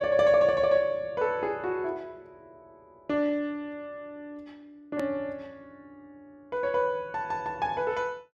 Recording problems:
click at an edit; at 5 s

